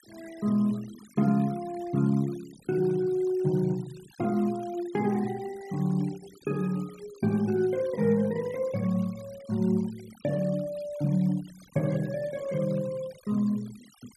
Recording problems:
denoising artefacts; signal-to-artefact ratio 23 dB

